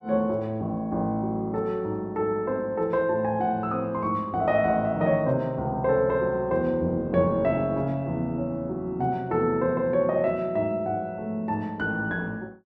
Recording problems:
none

